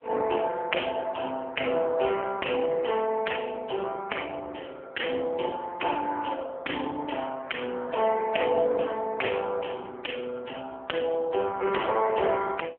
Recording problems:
phone line; 300 Hz to 3.2 kHz, AMR-NB

